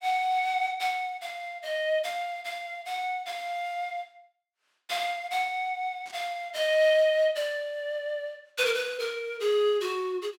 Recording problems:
burst of static; at 6 s; peak -15 dB vs average level

